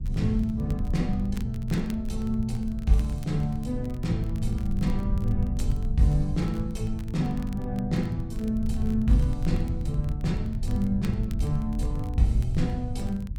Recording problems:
rumble; below 94 Hz, SNR 4 dB
crackle; vinyl, SNR 25 dB

